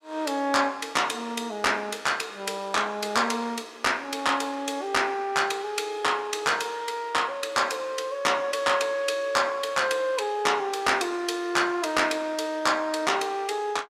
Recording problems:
none

